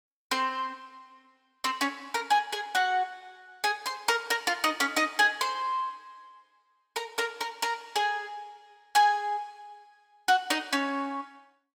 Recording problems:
none

